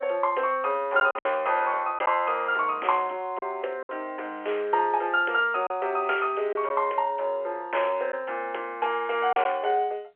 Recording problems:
phone line; 340 Hz to 3.2 kHz, G.711
lost packets; 3% of the sound replaced, filled with silence

